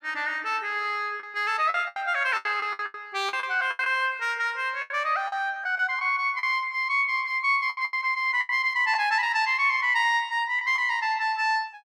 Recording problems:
lost packets; 9% of the sound replaced, filled with the last packet

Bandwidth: 14.5 kHz